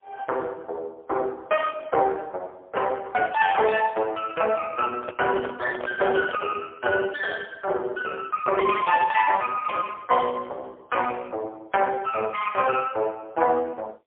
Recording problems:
phone line; 340 Hz to 2.5 kHz, AMR-NB, then MP3
handling noise; from 5 to 6.5 s; peak -4 dB vs average level

